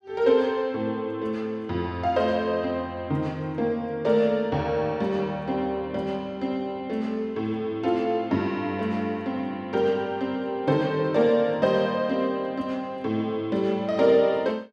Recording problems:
none

